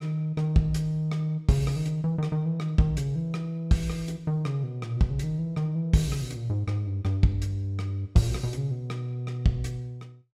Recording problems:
none

